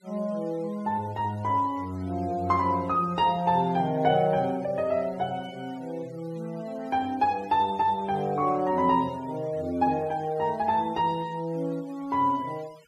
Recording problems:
noise reduction artefacts; signal-to-artefact ratio 25 dB

